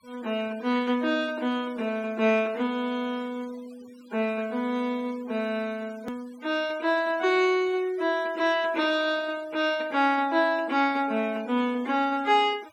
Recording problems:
denoising artefacts; signal-to-artefact ratio 24 dB
hard cut with a click; at 6 s

